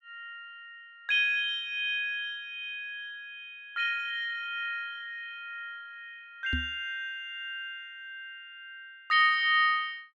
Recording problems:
knock on the microphone; at 6.5 s; peak 0 dB vs average level

